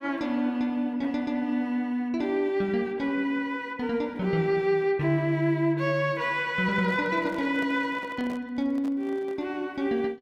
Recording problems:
handling noise; from 6.5 to 9.5 s; peak -10 dB vs average level

